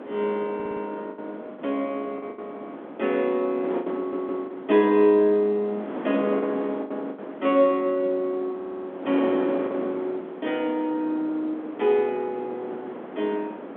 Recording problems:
telephone audio; 240 Hz to 3.5 kHz, G.711
wind noise; below 710 Hz, SNR 11 dB
lost packets; 5% of the sound replaced, filled with the last packet
audio stuttering; at 0.5 s, at 4 s and at 8.5 s

